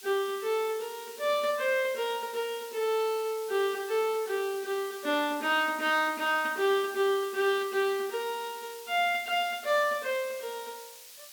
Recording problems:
hiss; slope +4 dB per octave, SNR 16 dB

